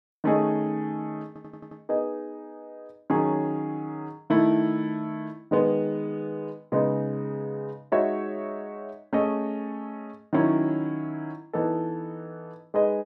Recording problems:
stutter; at 1.5 s

